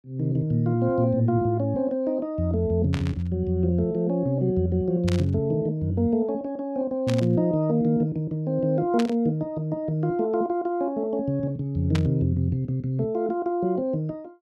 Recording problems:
burst of static; 5 times, first at 3 s; peak -3 dB vs average level

